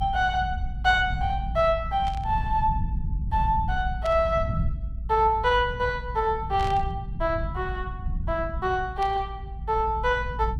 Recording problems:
low-frequency rumble; below 100 Hz, SNR 7 dB
static burst; 4 times, first at 2 s; peak -10 dB vs average level

